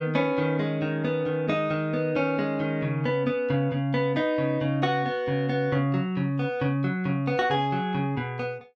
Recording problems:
none

